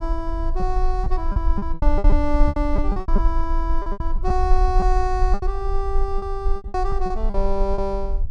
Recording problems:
rumble; below 44 Hz, SNR -1 dB
packet loss; 13% of the sound replaced, filled with repeated pitch periods

